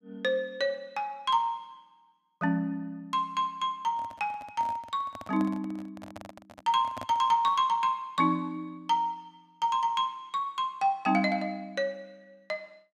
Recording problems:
handling noise; from 4 to 7.5 s; peak -6 dB vs average level

